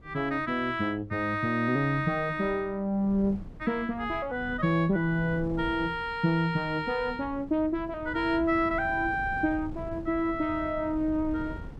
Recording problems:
wind noise; below 200 Hz, SNR 16 dB

